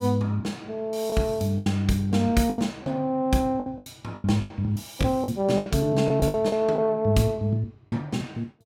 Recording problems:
lost packets; 10% of the sound replaced, filled with the last packet

